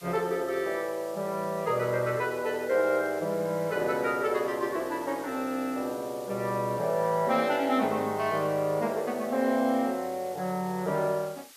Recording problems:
background hiss; slope +3 dB per octave, SNR 20 dB

